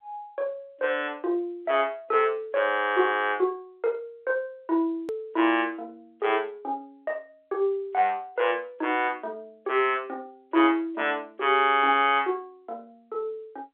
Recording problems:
phone line; 280 Hz to 3.4 kHz, G.711
click at an edit; at 5 s

